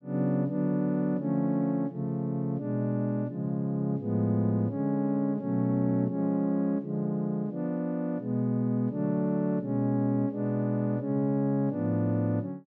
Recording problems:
none

